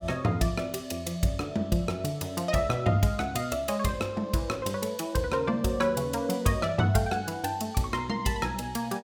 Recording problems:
none

